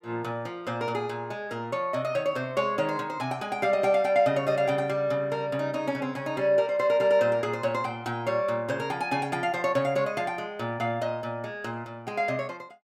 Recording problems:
none

